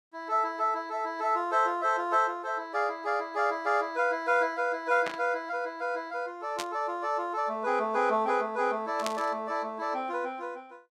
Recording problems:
static burst; at 5 s, at 6.5 s and at 9 s; peak -1 dB vs average level

